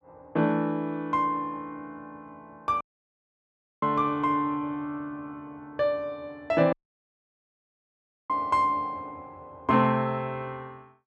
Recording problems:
dropout; at 3 s for 1 s and at 6.5 s for 1.5 s

